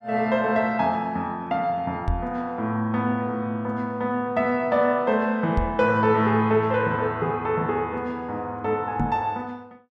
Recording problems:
microphone bump; at 2 s, at 5.5 s and at 9 s; peak +2 dB vs average level

